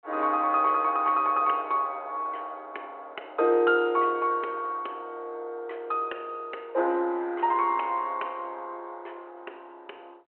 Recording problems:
telephone audio; 300 Hz to 3.2 kHz, G.726

